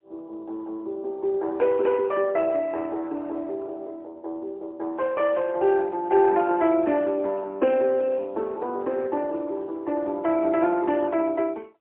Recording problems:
phone line; 260 Hz to 3.2 kHz, AMR-NB, then MP3

